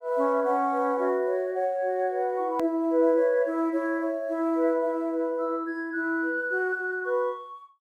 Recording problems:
edit click; at 2.5 s

